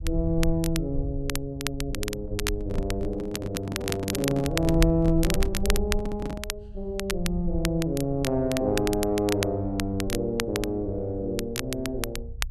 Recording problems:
rumble; below 62 Hz, strongest tone 22 Hz, SNR 8 dB
crackling; vinyl, SNR 7 dB
microphone handling noise; from 2.5 to 6.5 s; peak -1 dB vs average level

